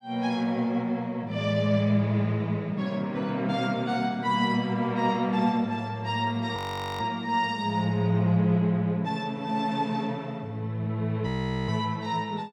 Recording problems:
audio freezing; at 6.5 s and at 11 s

